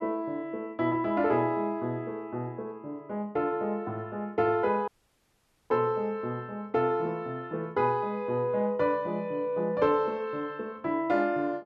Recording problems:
dropout; at 5 s for 1 s

